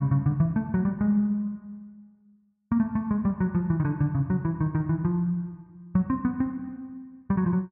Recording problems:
none

